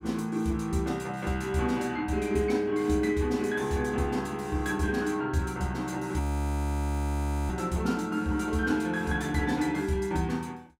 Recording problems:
audio freezing; at 6 s for 1.5 s

